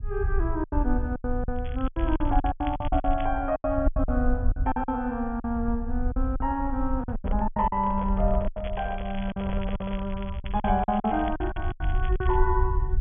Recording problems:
treble cut off; nothing above 3.4 kHz
low-frequency rumble; below 66 Hz, SNR 3 dB
lost packets; 14% of the sound replaced, filled with silence
crackle; from 1.5 to 3.5 s and from 8.5 to 12 s; loose cable, SNR 18 dB
microphone handling noise; from 7 to 10 s; peak -7 dB vs average level

